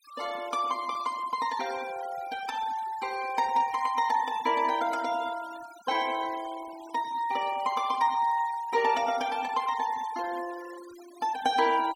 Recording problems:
denoising artefacts; signal-to-artefact ratio 16 dB

